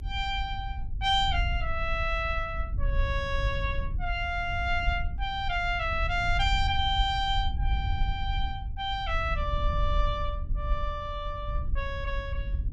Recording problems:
low-frequency rumble; below 68 Hz, SNR 3 dB

